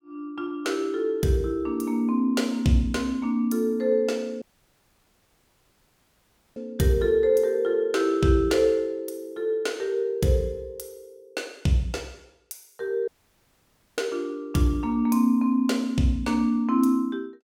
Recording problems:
dropout; at 4.5 s for 2 s and at 13 s for 1 s

